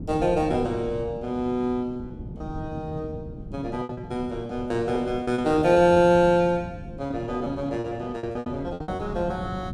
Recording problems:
wind noise; below 230 Hz, SNR 13 dB
lost packets; 9% of the sound replaced, filled with repeated pitch periods

